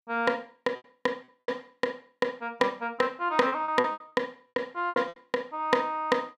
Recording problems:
lost packets; 11% of the sound replaced, filled with repeated pitch periods

